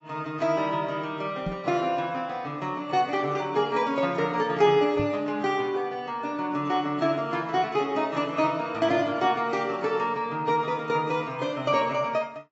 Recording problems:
lossy compression; AAC, log-spectral distance 2 dB, nothing above 7.3 kHz
microphone bump; at 1.5 s and at 5 s; peak -1 dB vs average level

